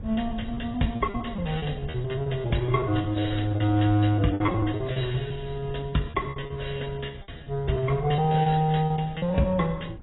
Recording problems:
lossy compression; AAC, log-spectral distance 4 dB, nothing above 3.9 kHz
wind noise; below 140 Hz, SNR 15 dB
packet loss; 18% of the sound replaced, filled with repeated pitch periods

